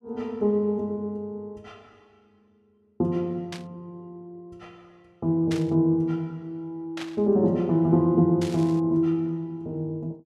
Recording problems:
burst of static; 4 times, first at 3.5 s; peak -7 dB vs average level

